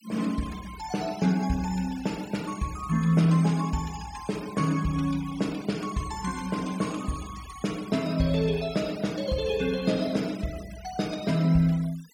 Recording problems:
noise reduction artefacts; signal-to-artefact ratio 18 dB

